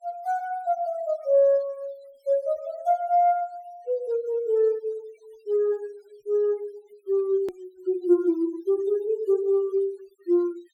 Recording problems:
denoising artefacts; signal-to-artefact ratio 27 dB
edit click; at 7.5 s

